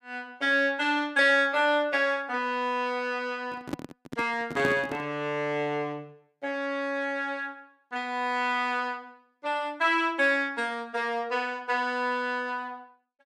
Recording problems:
microphone handling noise; from 3.5 to 5 s; peak +1 dB vs average level

